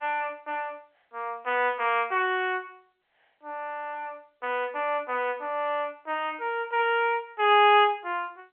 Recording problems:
phone line; 320 Hz to 3.2 kHz, G.711

